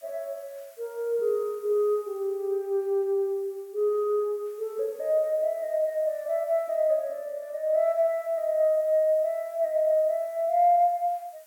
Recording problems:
hiss; SNR 29 dB

